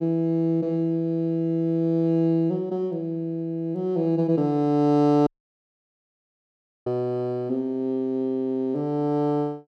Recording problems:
dropout; at 5.5 s for 1.5 s

